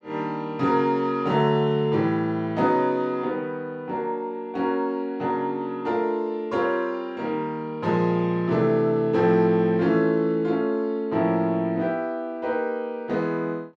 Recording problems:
none

